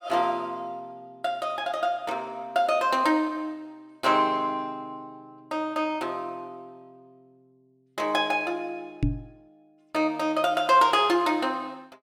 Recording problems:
knock on the microphone; at 9 s; peak +4 dB vs average level

